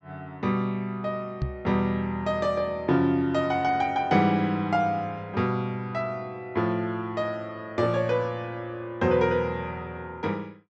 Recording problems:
low-pass filter; nothing above 8 kHz
knock on the microphone; at 1.5 s; peak +3 dB vs average level

